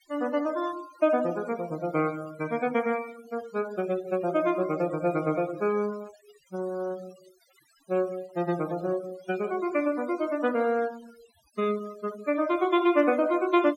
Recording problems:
denoising artefacts; signal-to-artefact ratio 20 dB

